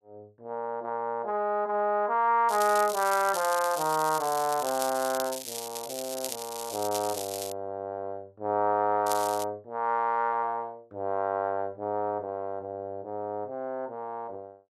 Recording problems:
crackle; from 2.5 to 7.5 s and at 9 s; loose cable, SNR 8 dB

